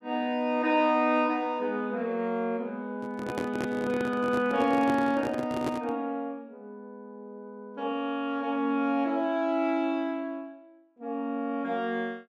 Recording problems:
microphone handling noise; from 3 to 6 s; peak 0 dB vs average level

